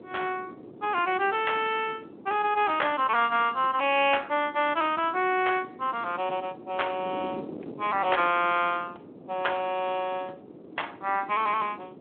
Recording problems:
phone line; 260 Hz to 3.4 kHz, Speex
wind noise; below 440 Hz, SNR 17 dB

